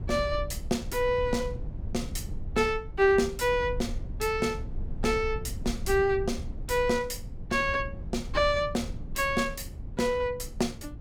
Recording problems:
rumble; below 94 Hz, SNR 10 dB

